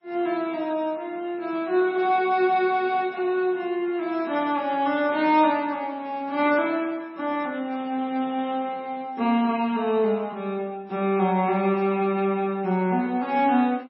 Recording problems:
lossy codec; MP3, log-spectral distance 2 dB, nothing above 5.3 kHz

